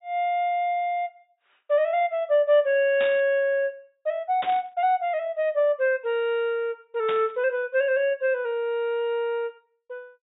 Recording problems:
low-pass filter; nothing above 4 kHz
static burst; at 3 s, at 4.5 s and at 7 s; peak -6 dB vs average level

